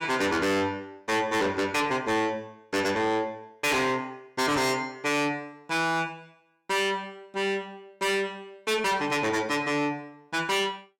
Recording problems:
distortion; soft clipping, signal-to-distortion ratio 6 dB

